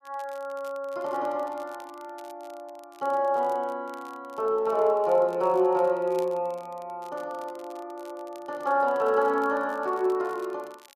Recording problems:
crackling; vinyl, SNR 28 dB

